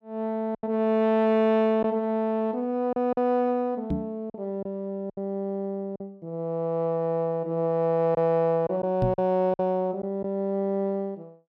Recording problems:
packet loss; 4% of the sound replaced, filled with silence
microphone thump; at 4 s and at 9 s; peak +2 dB vs average level

